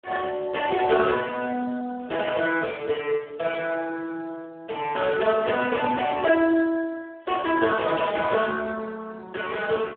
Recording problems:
telephone audio; 220 Hz to 2.7 kHz, Speex

